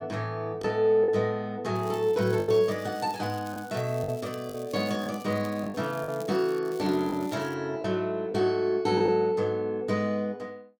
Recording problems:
lost packets; 4% of the sound replaced, filled with the last packet
crackling; from 2 to 6.5 s and at 6.5 s; loose cable, SNR 22 dB

